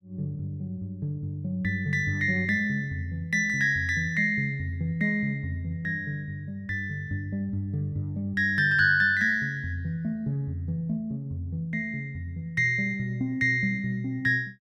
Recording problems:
none

